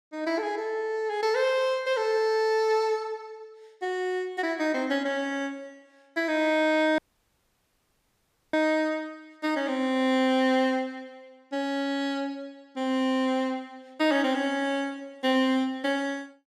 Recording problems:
audio cutting out; at 7 s for 1.5 s

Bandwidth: 15 kHz